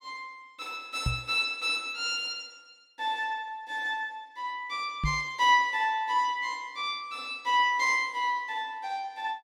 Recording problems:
knock on the microphone; at 1 s and at 5 s; peak +2 dB vs average level

